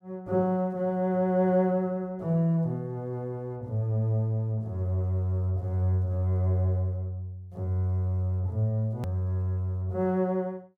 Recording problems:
hard cut with a click; at 9 s

